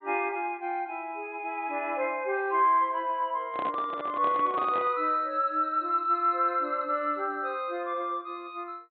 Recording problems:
treble cut off; nothing above 4 kHz
microphone handling noise; from 3.5 to 5 s; peak -4 dB vs average level

